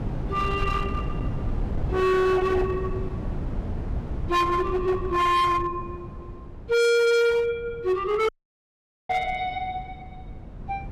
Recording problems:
distortion; hard clipping, uneven, signal-to-distortion ratio 7 dB
wind noise; below 220 Hz, SNR 9 dB
audio cutting out; at 8.5 s for 1 s

